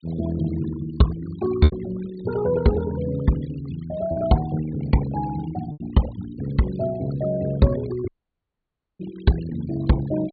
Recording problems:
treble cut off; nothing above 4.5 kHz
denoising artefacts; signal-to-artefact ratio 17 dB
lost packets; 1.9% of the sound replaced, filled with repeated pitch periods
audio cutting out; at 8 s for 1 s

